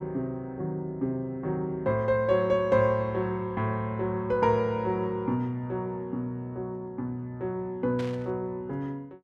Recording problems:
burst of static; at 8 s; peak -9 dB vs average level

